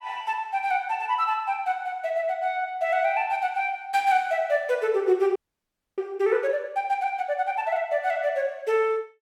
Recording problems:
audio freezing; at 5.5 s for 0.5 s

